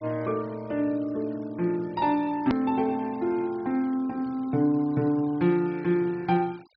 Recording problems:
treble missing; nothing above 5.5 kHz
noise reduction artefacts; signal-to-artefact ratio 26 dB
edit click; at 2.5 s

